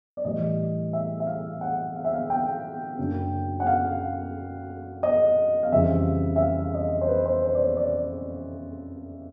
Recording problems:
none

